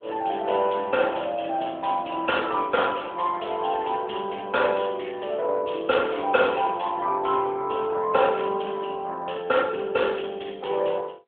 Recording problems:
telephone audio; 300 Hz to 3.5 kHz, AMR-NB

